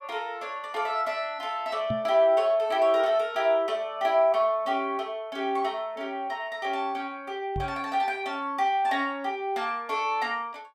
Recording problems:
microphone bump; at 2 s and at 7.5 s; peak -2 dB vs average level

